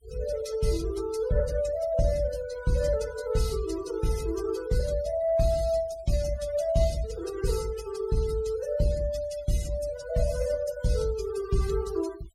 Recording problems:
noise reduction artefacts; signal-to-artefact ratio 17 dB

